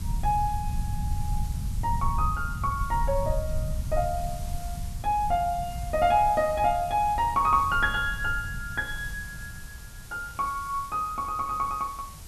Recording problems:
hiss; slope -1 dB per octave, SNR 19 dB
rumble; below 100 Hz, SNR 7 dB

